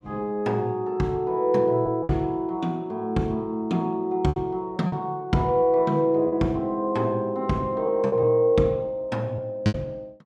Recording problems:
packet loss; 4% of the sound replaced, filled with repeated pitch periods

